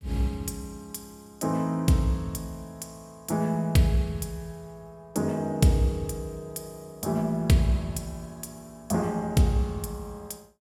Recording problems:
none

